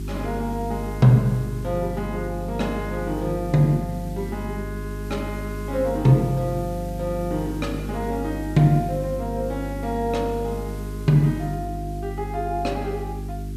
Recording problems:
hum; 50 Hz, harmonics up to 400 Hz, SNR 8 dB
background hiss; slope +2 dB per octave, SNR 24 dB

